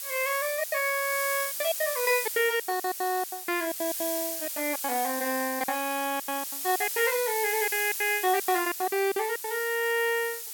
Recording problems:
background hiss; slope +4 dB per octave, SNR 4 dB
packet loss; 17% of the sound replaced, filled with silence

